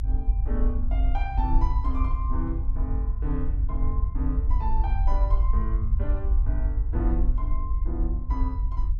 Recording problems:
low-frequency rumble; below 56 Hz, SNR -8 dB

